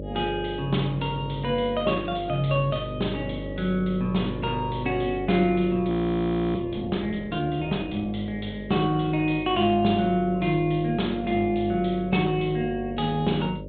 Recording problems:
low-pass filter; nothing above 4 kHz
hum; 50 Hz, harmonics up to 600 Hz, SNR 11 dB
audio freezing; at 6 s for 0.5 s

